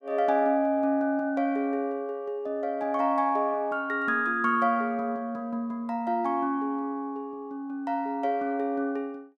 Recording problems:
none

